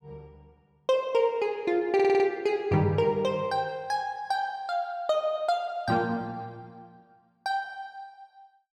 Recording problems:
audio stuttering; at 2 s

